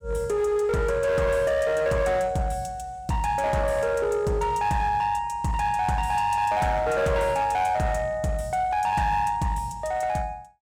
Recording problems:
distorted audio; hard clipping, uneven, signal-to-distortion ratio 11 dB

